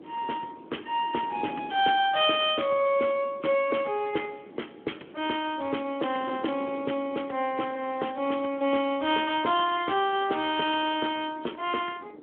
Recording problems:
phone line; 260 Hz to 3.4 kHz, Speex
wind on the microphone; below 480 Hz, SNR 18 dB

